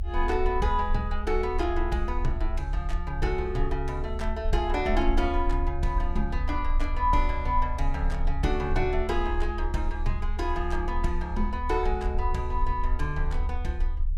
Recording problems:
low-frequency rumble; below 68 Hz, strongest tone 28 Hz, SNR 2 dB

